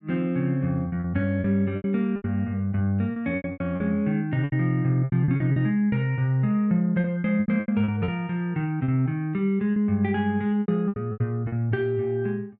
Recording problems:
lost packets; 12% of the sound replaced, filled with repeated pitch periods

